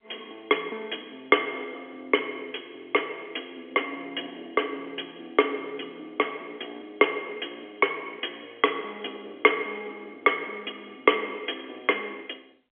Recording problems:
phone line; 260 Hz to 3.4 kHz, G.711

